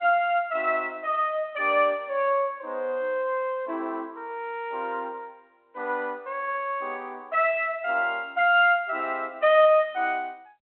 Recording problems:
phone line; 220 Hz to 3.3 kHz, G.726

